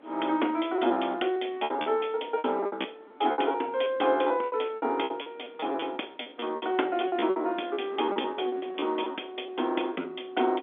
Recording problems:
phone line; 240 Hz to 3.6 kHz, G.711
wind on the microphone; below 740 Hz, SNR 21 dB
packet loss; 16% of the sound replaced, filled with repeated pitch periods

